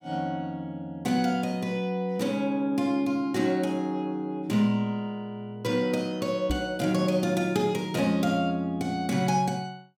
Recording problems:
knock on the microphone; at 6.5 s; peak +1 dB vs average level

